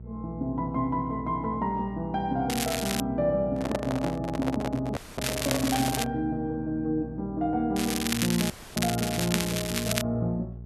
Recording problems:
hum; 60 Hz, harmonics up to 480 Hz, SNR 13 dB
crackling; at 2.5 s, at 5 s and from 8 to 10 s; loose cable, SNR 3 dB
microphone handling noise; from 3.5 to 6 s; peak +2 dB vs average level
dropout; at 5 s and at 8.5 s

